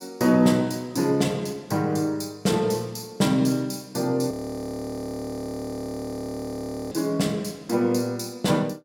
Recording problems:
audio freezing; at 4.5 s for 2.5 s

